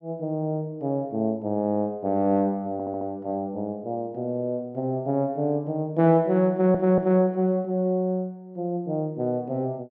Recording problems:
audio stuttering; at 2.5 s and at 6.5 s

